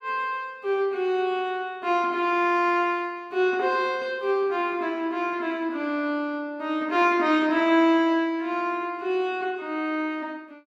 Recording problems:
none

